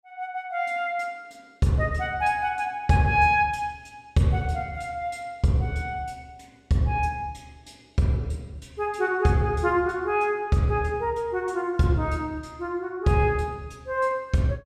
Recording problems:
none

